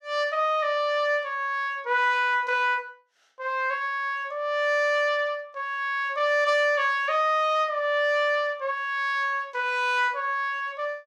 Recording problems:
none

